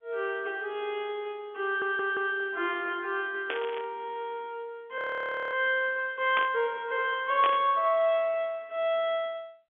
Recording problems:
telephone audio; 260 Hz to 3.5 kHz, G.711
audio stuttering; at 1.5 s
burst of static; at 3.5 s, at 6.5 s and at 7.5 s; peak +1 dB vs average level
frozen audio; at 5 s for 0.5 s

